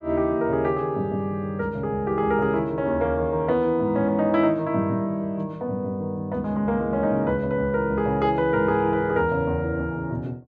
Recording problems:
none

